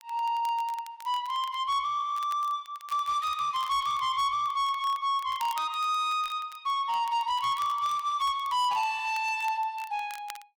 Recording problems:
distortion; soft clipping, signal-to-distortion ratio 12 dB
crackling; vinyl, SNR 22 dB

